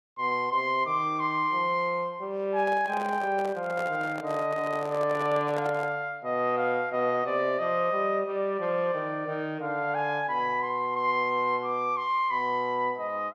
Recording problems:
microphone handling noise; from 2.5 to 6 s; peak -6 dB vs average level

